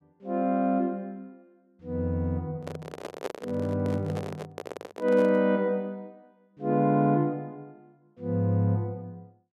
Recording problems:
handling noise; from 2.5 to 5.5 s; peak -1 dB vs average level

